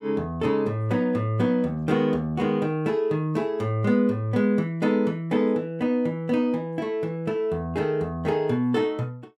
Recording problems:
none

